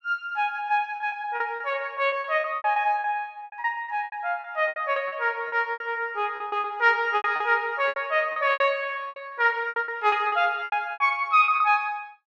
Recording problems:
packet loss; 16% of the sound replaced, filled with repeated pitch periods

